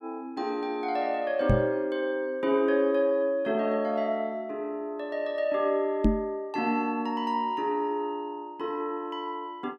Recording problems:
microphone bump; at 1.5 s and at 6 s; peak +9 dB vs average level

